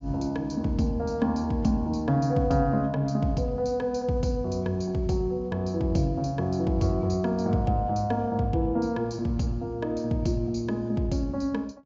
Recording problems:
low-pass filter; nothing above 8 kHz

